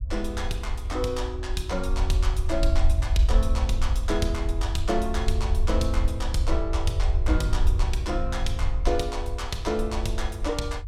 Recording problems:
rumble; below 66 Hz, SNR -2 dB

